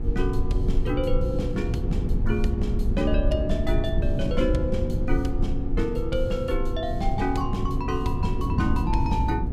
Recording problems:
hum; 60 Hz, harmonics up to 960 Hz, SNR 10 dB
rumble; below 52 Hz, strongest tone 22 Hz, SNR 3 dB
wind on the microphone; below 140 Hz, SNR 2 dB

